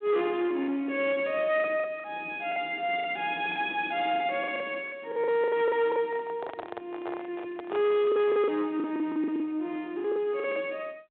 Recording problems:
phone line; 190 Hz to 3.7 kHz, G.726
distorted audio; soft clipping, signal-to-distortion ratio 11 dB
lost packets; 12% of the sound replaced, filled with the last packet
microphone handling noise; from 6 to 8 s; peak -4 dB vs average level

